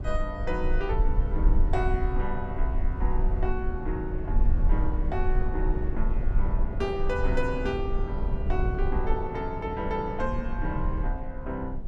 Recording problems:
rumble; below 50 Hz, SNR -2 dB
wind noise; below 400 Hz, SNR 7 dB

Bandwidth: 12 kHz